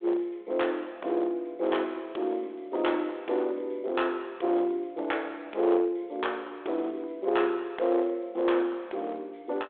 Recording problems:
telephone audio; 300 Hz to 3.5 kHz, G.726
distorted audio; hard clipping, uneven, signal-to-distortion ratio 13 dB

